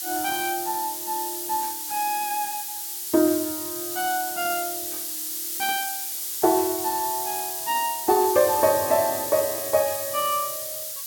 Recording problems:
background hiss; slope +5 dB per octave, SNR 3 dB

